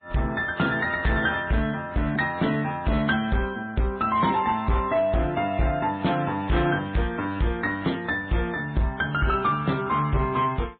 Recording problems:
low-pass filter; nothing above 3.8 kHz
lossy compression; MP3, then AAC, log-spectral distance 3 dB
distorted audio; hard clipping, uneven, signal-to-distortion ratio 11 dB

